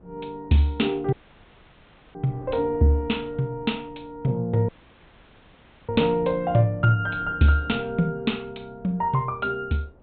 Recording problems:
treble cut off; nothing above 4 kHz
wind on the microphone; below 420 Hz, SNR 23 dB
audio cutting out; at 1 s for 1 s and at 4.5 s for 1 s

